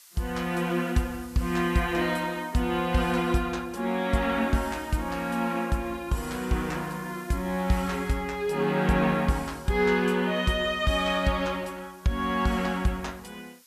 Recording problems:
background hiss; slope +4 dB per octave, SNR 24 dB

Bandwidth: 14.5 kHz